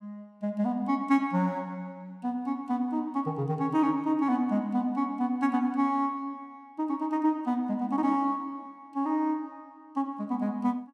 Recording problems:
none

